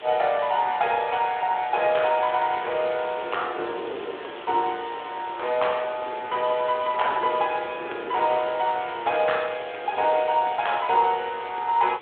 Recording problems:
phone line; 320 Hz to 3.7 kHz, Speex
background hiss; SNR 17 dB
wind noise; below 570 Hz, SNR 16 dB

